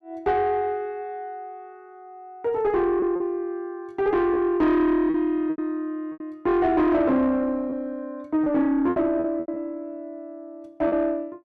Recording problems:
distorted audio; soft clipping, signal-to-distortion ratio 11 dB
lost packets; 6% of the sound replaced, filled with repeated pitch periods

